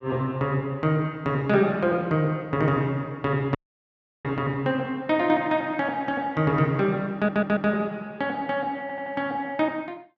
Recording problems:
audio cutting out; at 3.5 s for 0.5 s
stutter; at 7 s and at 9 s

